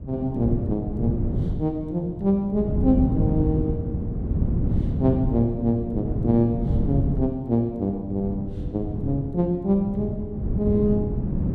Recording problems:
wind on the microphone; below 200 Hz, SNR 2 dB

